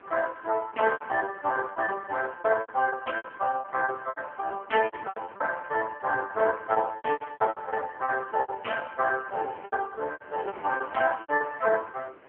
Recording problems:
phone line; 340 Hz to 2.7 kHz, AMR-NB
wind noise; below 1.5 kHz, SNR 21 dB
lost packets; 15% of the sound replaced, filled with repeated pitch periods

